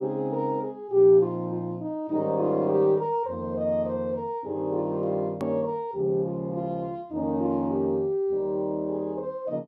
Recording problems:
click at an edit; at 5.5 s

